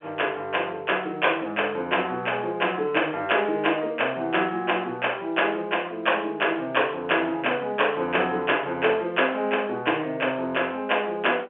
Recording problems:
phone line; 220 Hz to 3.5 kHz, G.711

